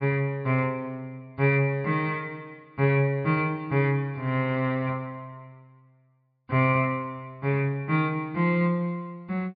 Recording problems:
treble missing; nothing above 4.9 kHz

